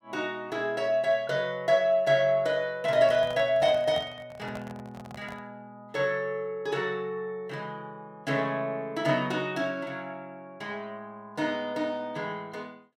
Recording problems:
microphone handling noise; from 3 to 5.5 s; peak -6 dB vs average level

